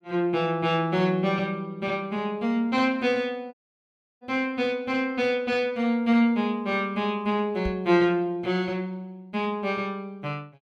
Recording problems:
dropout; at 3.5 s for 0.5 s
microphone thump; at 7.5 s; peak -4 dB vs average level

